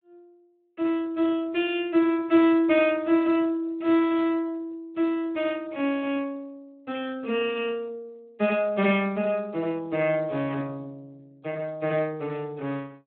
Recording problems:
phone line; 190 Hz to 3.4 kHz, Speex

